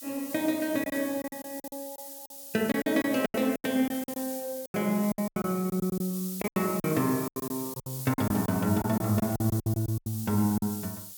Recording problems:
hiss; SNR 10 dB
lost packets; 15% of the sound replaced, filled with silence

